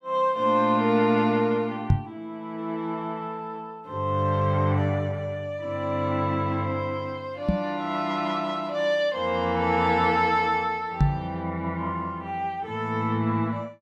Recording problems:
microphone bump; at 2 s, at 7.5 s and at 11 s; peak +8 dB vs average level

